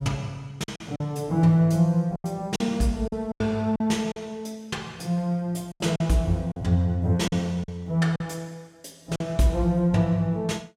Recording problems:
lost packets; 7% of the sound replaced, filled with silence

